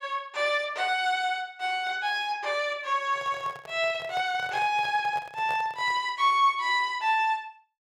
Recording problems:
microphone handling noise; from 3 to 6 s; peak -9 dB vs average level

